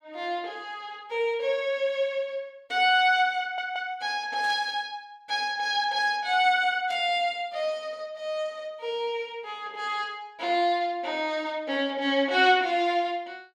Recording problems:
stutter; at 3.5 s
burst of static; at 4.5 s and at 7 s; peak -14 dB vs average level

